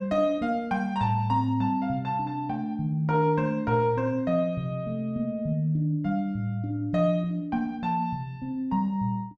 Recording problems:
none

